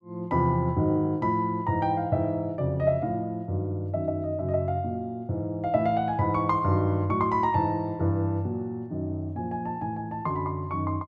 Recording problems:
none

